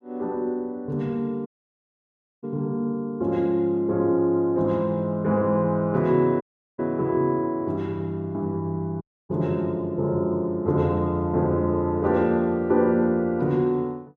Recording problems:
audio cutting out; at 1.5 s for 1 s, at 6.5 s and at 9 s

